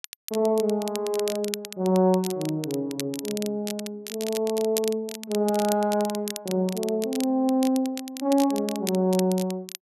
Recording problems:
crackle; vinyl, SNR 11 dB

